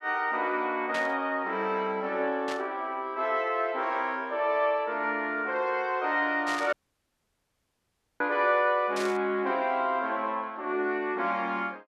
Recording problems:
burst of static; 4 times, first at 1 s; peak -4 dB vs average level
audio cutting out; at 6.5 s for 1.5 s

